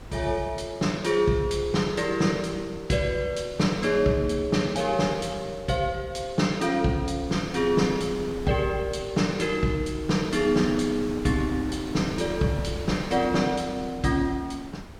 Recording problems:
wind on the microphone; below 740 Hz, SNR 15 dB

